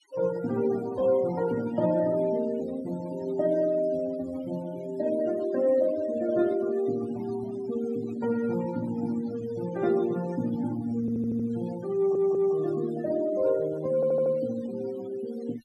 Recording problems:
noise reduction artefacts; signal-to-artefact ratio 18 dB
stutter; at 11 s, at 12 s and at 14 s

